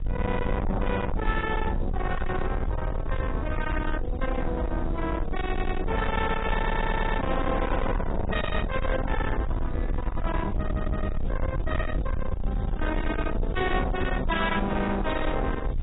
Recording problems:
lossy codec; AAC, log-spectral distance 2 dB, nothing above 3.8 kHz
distorted audio; soft clipping, signal-to-distortion ratio 7 dB
hiss; SNR 28 dB
rumble; below 210 Hz, SNR 2 dB
audio stuttering; at 5.5 s, at 6.5 s and at 11 s

